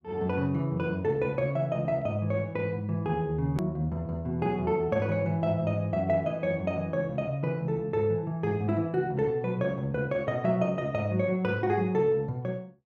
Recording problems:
edit click; at 3.5 s

